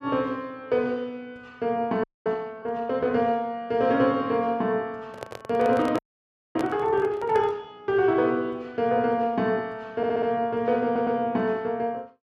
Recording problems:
audio freezing; at 2 s and at 6 s for 0.5 s
microphone handling noise; from 5 to 7.5 s; peak -3 dB vs average level
stutter; at 10 s and at 11 s

